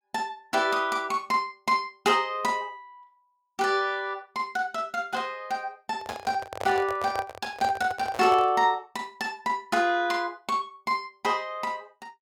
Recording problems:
handling noise; from 6 to 8.5 s; peak -3 dB vs average level

